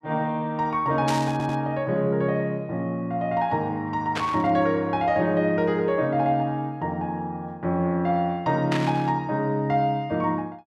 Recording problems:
static burst; at 1 s, at 4 s and at 8.5 s; peak -1 dB vs average level
stutter; at 1.5 s

